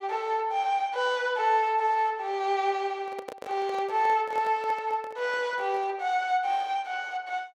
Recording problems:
handling noise; from 3 to 6 s; peak -7 dB vs average level

